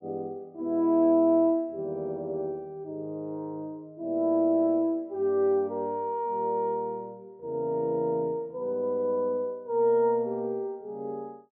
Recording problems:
treble cut off; nothing above 4 kHz

